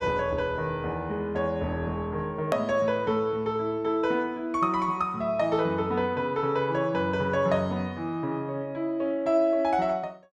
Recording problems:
hard cut with a click; at 2.5 s

